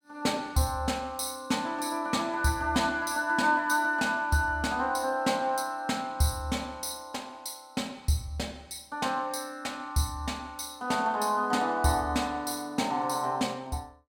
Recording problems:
none

